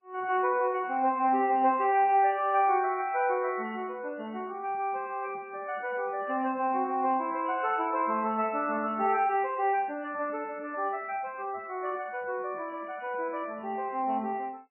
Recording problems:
codec artefacts; MP3, log-spectral distance 3 dB, nothing above 2.4 kHz

